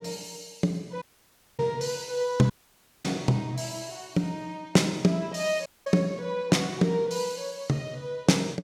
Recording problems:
audio cutting out; at 1 s for 0.5 s, at 2.5 s for 0.5 s and at 5.5 s

